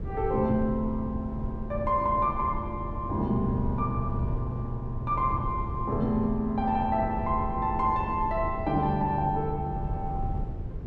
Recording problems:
low-frequency rumble; below 140 Hz, SNR 7 dB

